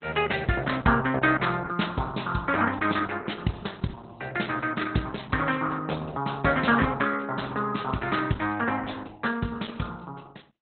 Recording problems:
lossy compression; Opus, log-spectral distance 7 dB, nothing above 4 kHz

